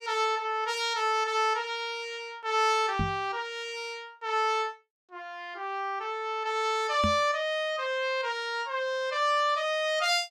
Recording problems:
knock on the microphone; at 3 s and at 7 s; peak +2 dB vs average level

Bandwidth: 15.5 kHz